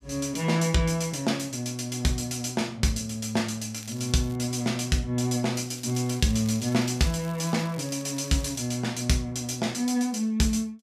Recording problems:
crackling; at 4 s and from 5.5 to 8.5 s; loose cable, SNR 21 dB

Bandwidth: 14.5 kHz